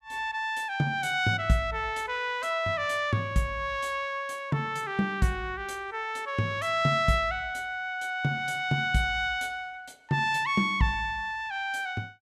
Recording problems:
none

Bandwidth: 14.5 kHz